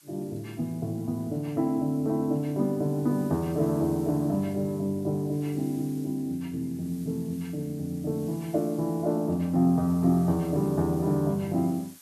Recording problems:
background hiss; slope +3 dB per octave, SNR 23 dB

